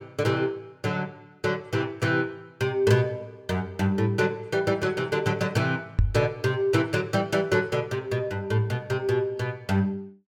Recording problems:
knock on the microphone; at 6 s; peak +7 dB vs average level

